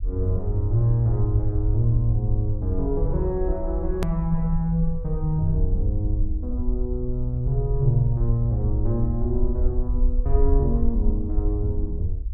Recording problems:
low-frequency rumble; below 60 Hz, SNR 2 dB
click at an edit; at 4 s

